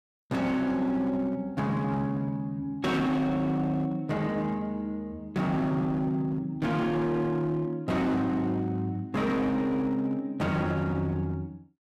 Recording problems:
distorted audio; hard clipping, signal-to-distortion ratio 11 dB

